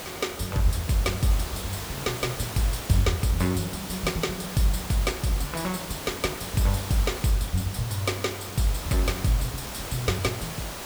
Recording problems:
background hiss; slope -3 dB per octave, SNR 7 dB

